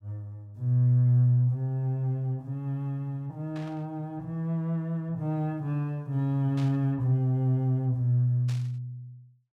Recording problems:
static burst; at 3.5 s, at 6.5 s and at 8.5 s; peak -13 dB vs average level

